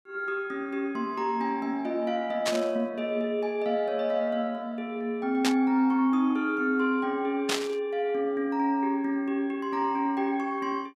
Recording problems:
burst of static; at 2.5 s, at 5.5 s and at 7.5 s; peak +4 dB vs average level

